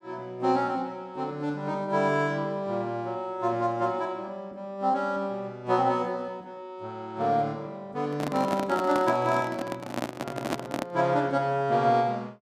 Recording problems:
handling noise; from 8 to 11 s; peak +2 dB vs average level

